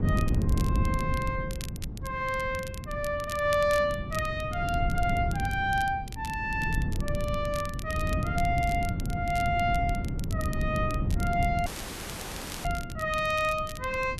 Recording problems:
wind noise; below 170 Hz, SNR 3 dB
crackling; vinyl, SNR 15 dB
dropout; at 12 s for 1 s

